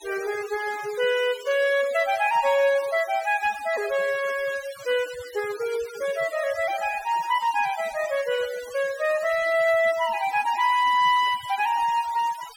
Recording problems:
noise reduction artefacts; signal-to-artefact ratio 17 dB

